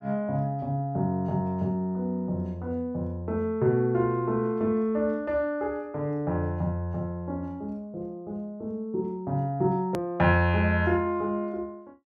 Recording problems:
click at an edit; at 10 s

